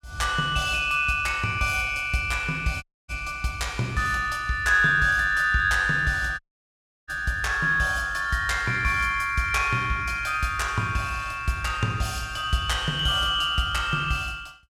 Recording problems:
audio cutting out; at 3 s and at 6.5 s for 0.5 s

